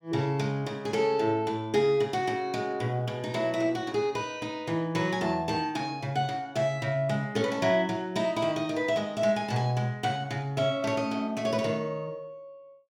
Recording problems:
none

